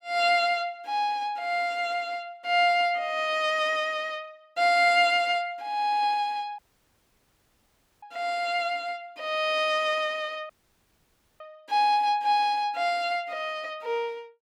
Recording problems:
dropout; at 6.5 s for 1.5 s and at 11 s for 1 s

